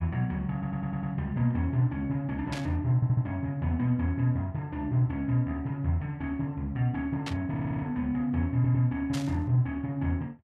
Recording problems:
stutter; 4 times, first at 0.5 s
burst of static; at 2.5 s, at 7.5 s and at 9 s; peak -3 dB vs average level

